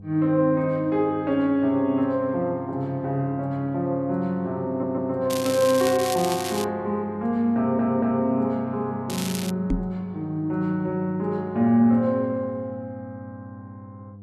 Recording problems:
mains hum; 50 Hz, harmonics up to 700 Hz, SNR 19 dB
stutter; at 4.5 s and at 7.5 s
crackling; from 5.5 to 6.5 s and at 9 s; loose cable, SNR 9 dB
microphone thump; at 9.5 s; peak +2 dB vs average level

